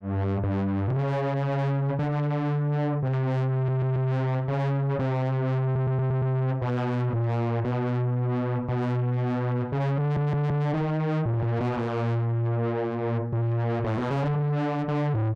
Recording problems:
distorted audio; soft clipping, signal-to-distortion ratio 5 dB
stutter; at 3.5 s, at 5.5 s and at 10 s

